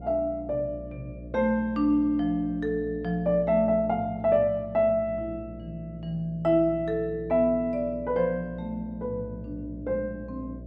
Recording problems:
electrical hum; 60 Hz, harmonics up to 660 Hz, SNR 16 dB

